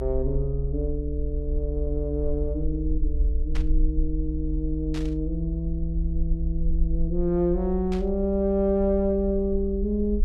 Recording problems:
low-frequency rumble; below 60 Hz, SNR 3 dB
burst of static; at 3.5 s, at 5 s and at 8 s; peak -8 dB vs average level

